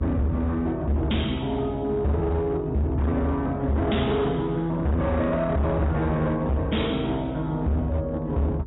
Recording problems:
codec artefacts; AAC, log-spectral distance 2 dB, nothing above 3.8 kHz
distorted audio; hard clipping, signal-to-distortion ratio 7 dB
hum; 50 Hz, harmonics up to 500 Hz, SNR 17 dB

